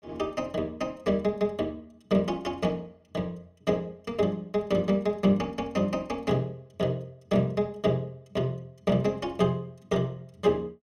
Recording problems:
none

